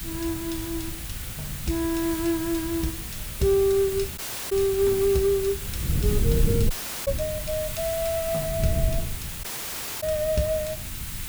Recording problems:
background hiss; SNR 7 dB
wind noise; below 140 Hz, SNR 6 dB
audio cutting out; at 4 s, at 6.5 s and at 9.5 s for 0.5 s

